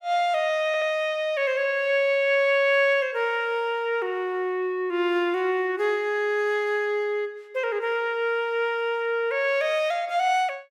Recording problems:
audio stuttering; at 0.5 s

